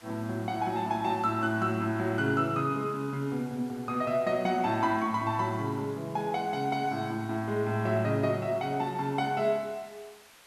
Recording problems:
background hiss; SNR 24 dB

